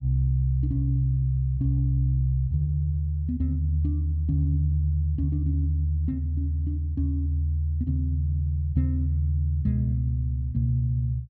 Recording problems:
none

